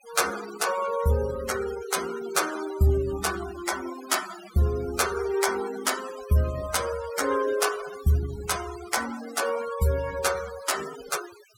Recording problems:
noise reduction artefacts; signal-to-artefact ratio 11 dB

